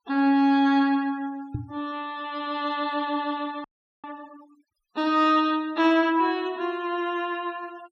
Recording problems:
denoising artefacts; signal-to-artefact ratio 26 dB
microphone thump; at 1.5 s; peak -2 dB vs average level
frozen audio; at 3.5 s

